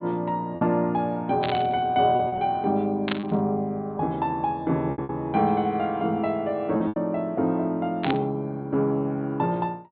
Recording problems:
treble cut off; nothing above 4.2 kHz
lost packets; 5% of the sound replaced, filled with repeated pitch periods
static burst; at 1.5 s, at 3 s and at 8 s; peak +1 dB vs average level

